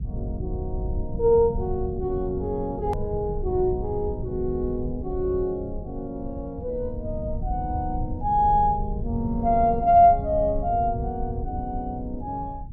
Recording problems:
low-frequency rumble; below 110 Hz, SNR 9 dB
hard cut with a click; at 3 s

